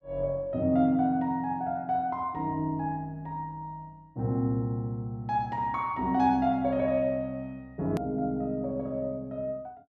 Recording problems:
edit click; at 8 s

